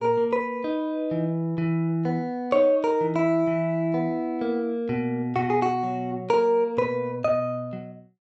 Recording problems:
none

